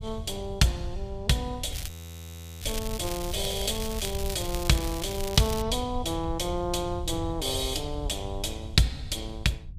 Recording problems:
low-frequency rumble; below 90 Hz, SNR 9 dB
crackle; from 1.5 to 5.5 s; loose cable, SNR 9 dB
frozen audio; at 2 s for 0.5 s

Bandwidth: 15 kHz